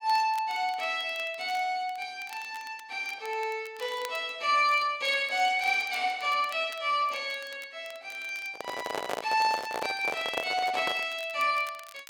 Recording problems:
crackling; vinyl, SNR 22 dB
microphone handling noise; from 8.5 to 11 s; peak 0 dB vs average level

